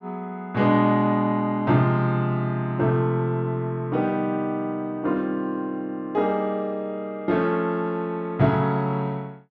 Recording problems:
none

